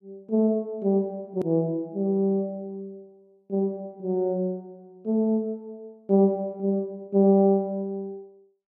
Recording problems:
hard cut with a click; at 1.5 s

